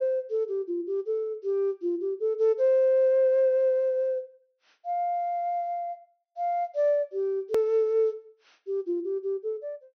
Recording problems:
treble cut off; nothing above 6.2 kHz
edit click; at 7.5 s

